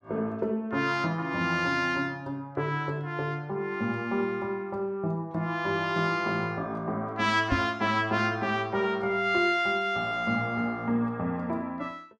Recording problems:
knock on the microphone; at 7.5 s; peak +4 dB vs average level

